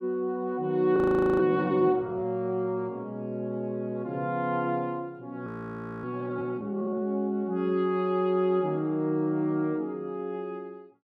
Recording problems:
frozen audio; at 1 s and at 5.5 s for 0.5 s

